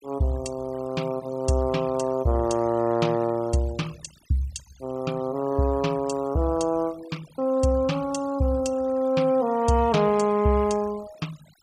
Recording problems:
denoising artefacts; signal-to-artefact ratio 22 dB

